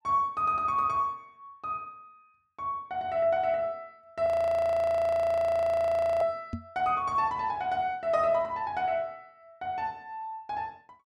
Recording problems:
audio freezing; at 4.5 s for 2 s
microphone bump; at 6.5 s; peak -2 dB vs average level

